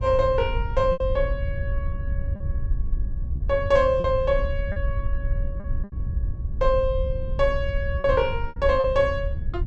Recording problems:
wind noise; below 76 Hz, SNR 5 dB
packet loss; 5% of the sound replaced, filled with repeated pitch periods

